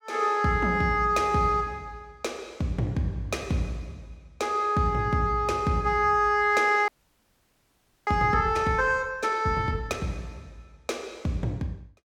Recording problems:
audio freezing; at 7 s for 1 s

